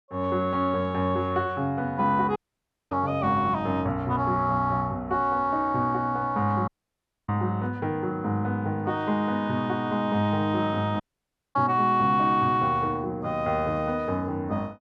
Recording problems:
dropout; at 2.5 s for 0.5 s, at 6.5 s for 0.5 s and at 11 s for 0.5 s

